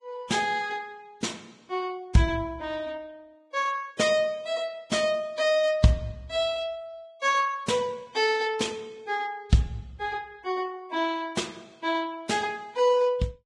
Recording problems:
codec artefacts; Vorbis, log-spectral distance 2 dB, nothing above 10.1 kHz

